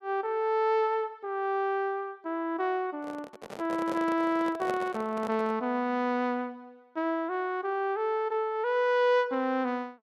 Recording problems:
microphone handling noise; from 3 to 5.5 s; peak -3 dB vs average level

